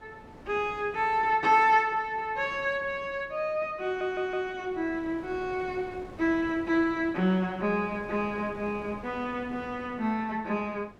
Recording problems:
wind on the microphone; below 640 Hz, SNR 20 dB
stutter; at 4 s

